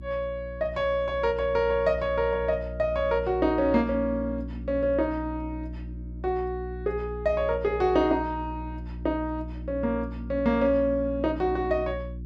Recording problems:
hum; 60 Hz, harmonics up to 360 Hz, SNR 11 dB

